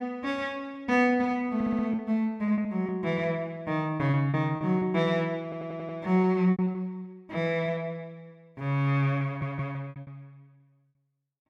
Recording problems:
lost packets; 7% of the sound replaced, filled with repeated pitch periods
stutter; at 1.5 s, at 5.5 s and at 9.5 s

